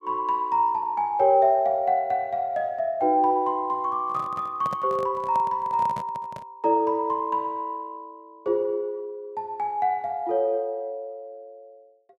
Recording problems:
handling noise; from 4 to 6.5 s; peak -7 dB vs average level

